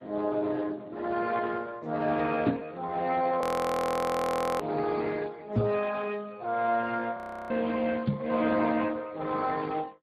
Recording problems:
lossy compression; MP3, then Speex, log-spectral distance 4 dB, nothing above 13.1 kHz
microphone thump; at 2.5 s, at 5.5 s and at 8 s; peak +8 dB vs average level
audio freezing; at 3.5 s for 1 s and at 7 s

